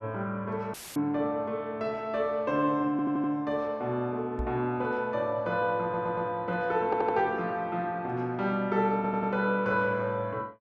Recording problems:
dropout; at 0.5 s; filled with static
stutter; 4 times, first at 3 s
microphone bump; at 4.5 s; peak -2 dB vs average level

